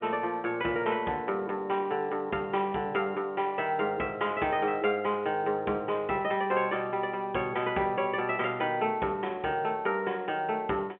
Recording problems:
telephone audio; 240 Hz to 3.5 kHz, G.711

